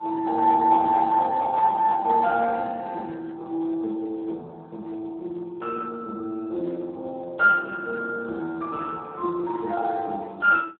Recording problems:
phone line; 240 Hz to 2.8 kHz, Speex

